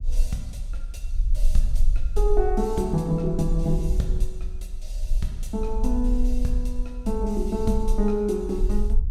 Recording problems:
rumble; below 42 Hz, strongest tone 20 Hz, SNR 2 dB

